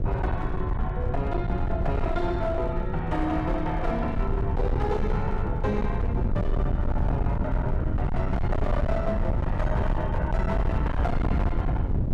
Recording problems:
distorted audio; hard clipping, signal-to-distortion ratio 8 dB
low-frequency rumble; below 120 Hz, SNR -2 dB

